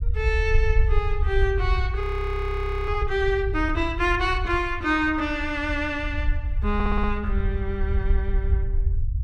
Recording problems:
rumble; below 70 Hz, SNR 2 dB
frozen audio; at 2 s for 1 s
stutter; at 6.5 s

